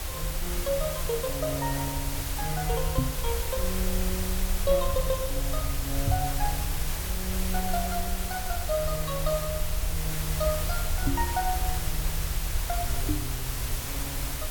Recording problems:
background hiss; slope -2 dB per octave, SNR 0 dB
low-frequency rumble; below 66 Hz, SNR 2 dB
knock on the microphone; 4 times, first at 3 s; peak +9 dB vs average level

